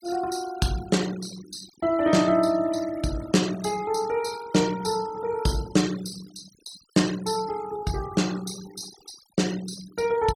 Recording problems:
denoising artefacts; signal-to-artefact ratio 16 dB

